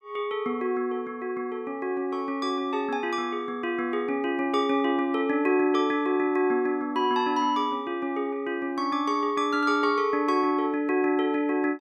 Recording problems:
none

